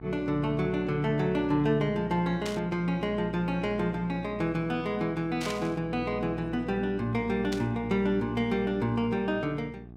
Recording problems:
hum; 60 Hz, harmonics up to 840 Hz, SNR 13 dB
burst of static; at 2.5 s, at 5.5 s and at 7.5 s; peak -4 dB vs average level

